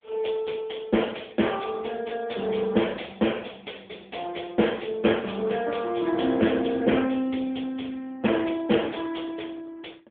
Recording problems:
telephone audio; 240 Hz to 3.5 kHz, AMR-NB

